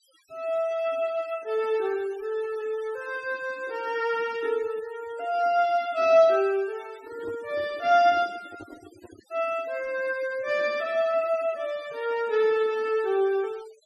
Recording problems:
denoising artefacts; signal-to-artefact ratio 24 dB
handling noise; from 7 to 9.5 s; peak -10 dB vs average level

